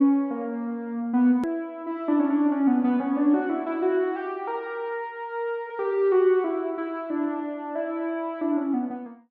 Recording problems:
hard cut with a click; at 1.5 s

